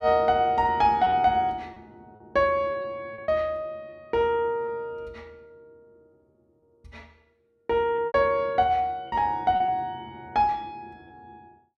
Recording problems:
lost packets; 5% of the sound replaced, filled with repeated pitch periods

